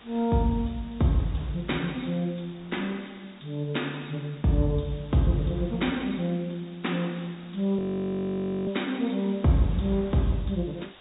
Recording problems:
treble missing; nothing above 4 kHz
background hiss; SNR 24 dB
wind noise; below 1.1 kHz, SNR 27 dB
frozen audio; at 8 s for 1 s

